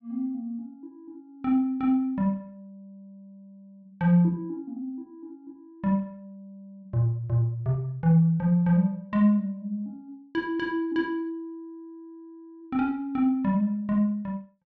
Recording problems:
none

